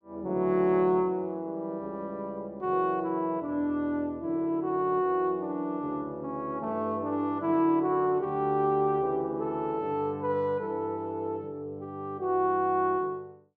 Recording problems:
none

